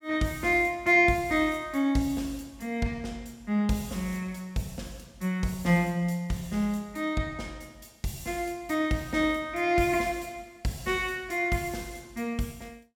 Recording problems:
none

